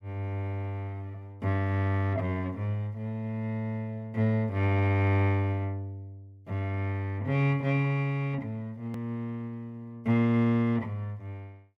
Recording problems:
click at an edit; at 9 s

